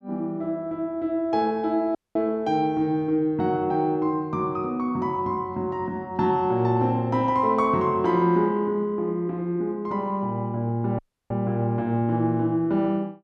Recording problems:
dropout; at 2 s and at 11 s

